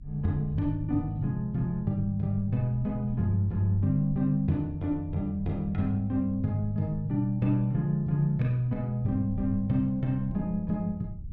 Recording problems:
rumble; below 98 Hz, SNR 16 dB

